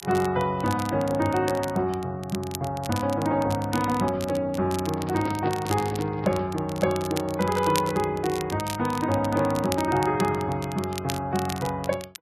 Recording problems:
lossy codec; Vorbis, log-spectral distance 2 dB
crackle; vinyl, SNR 13 dB
handling noise; from 5 to 6.5 s; peak -3 dB vs average level

